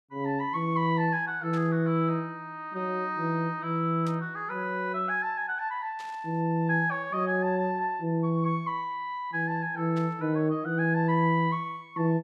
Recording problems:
burst of static; 4 times, first at 1.5 s; peak -14 dB vs average level

